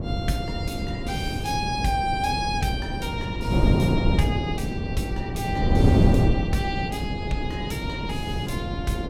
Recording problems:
wind noise; below 280 Hz, SNR -4 dB

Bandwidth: 16.5 kHz